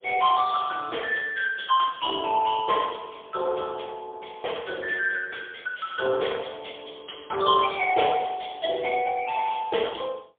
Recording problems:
telephone audio; 340 Hz to 3.5 kHz, AMR-NB, then MP3

